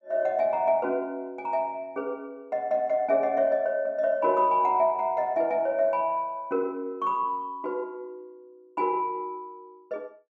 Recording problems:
none

